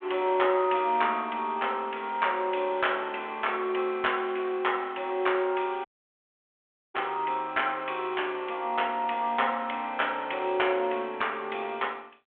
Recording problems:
telephone audio; 240 Hz to 3.4 kHz, G.726
audio cutting out; at 6 s for 1 s

